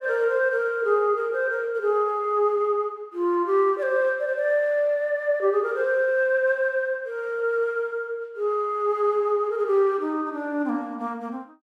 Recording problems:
none

